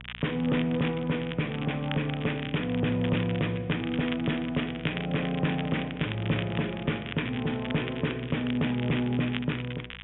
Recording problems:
treble cut off; nothing above 3.6 kHz
distortion; soft clipping, signal-to-distortion ratio 12 dB
hum; 60 Hz, harmonics up to 480 Hz, SNR 20 dB
crackle; vinyl, SNR 11 dB

